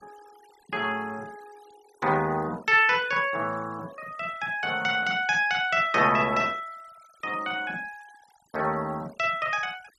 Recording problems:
denoising artefacts; signal-to-artefact ratio 25 dB

